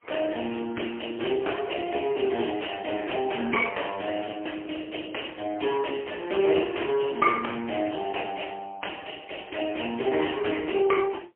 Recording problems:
telephone audio; 260 Hz to 3.2 kHz, AMR-NB, then MP3

